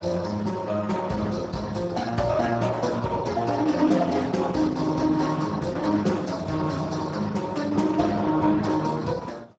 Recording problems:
lossy codec; Opus, then Speex, log-spectral distance 4 dB, nothing above 7.3 kHz

